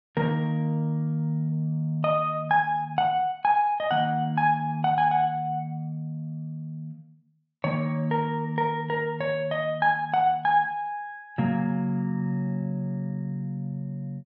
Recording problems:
treble cut off; nothing above 8 kHz

